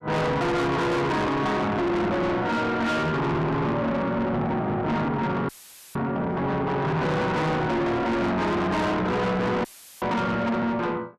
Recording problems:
distortion; soft clipping, signal-to-distortion ratio 6 dB
audio cutting out; at 5.5 s and at 9.5 s; filled with static

